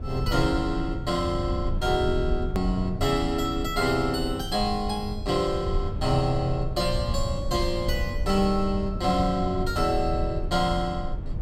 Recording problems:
low-frequency rumble; below 98 Hz, SNR 6 dB
click at an edit; at 2.5 s

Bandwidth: 16.5 kHz